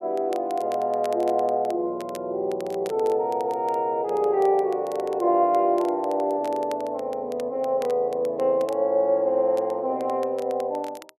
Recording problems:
crackling; vinyl, SNR 25 dB

